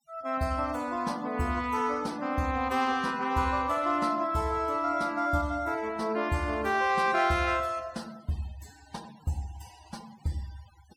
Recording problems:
noise reduction artefacts; signal-to-artefact ratio 23 dB

